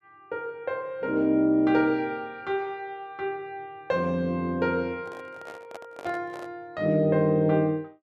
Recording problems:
handling noise; from 5 to 6.5 s; peak -10 dB vs average level

